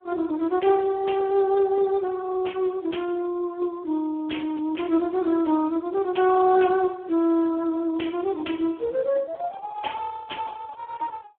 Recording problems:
phone line; 240 Hz to 3.4 kHz, Speex

